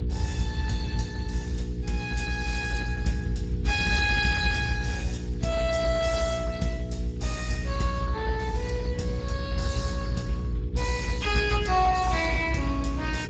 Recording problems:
lossy compression; Speex, log-spectral distance 3 dB, nothing above 7.8 kHz
electrical hum; 60 Hz, harmonics up to 480 Hz, SNR 7 dB
rumble; below 98 Hz, strongest tone 56 Hz, SNR 4 dB

